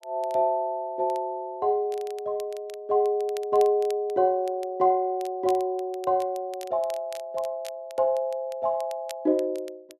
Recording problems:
crackling; vinyl, SNR 23 dB

